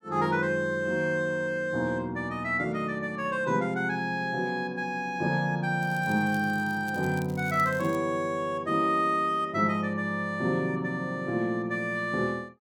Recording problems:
crackle; from 6 to 8 s; loose cable, SNR 22 dB

